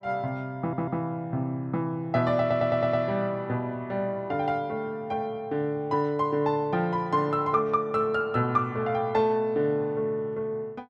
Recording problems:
audio stuttering; at 0.5 s and at 2.5 s

